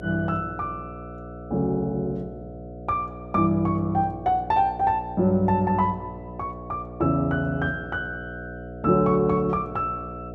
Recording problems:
electrical hum; 60 Hz, harmonics up to 720 Hz, SNR 13 dB

